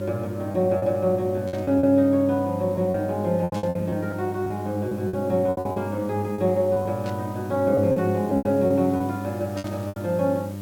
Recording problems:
hum; 50 Hz, harmonics up to 900 Hz, SNR 9 dB
hiss; slope 0 dB per octave, SNR 26 dB
packet loss; 11% of the sound replaced, filled with repeated pitch periods
burst of static; 4 times, first at 1.5 s; peak -12 dB vs average level

